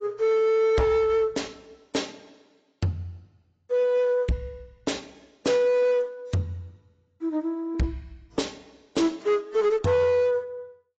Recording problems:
codec artefacts; AAC, log-spectral distance 2 dB, nothing above 7.6 kHz
distorted audio; hard clipping, signal-to-distortion ratio 12 dB

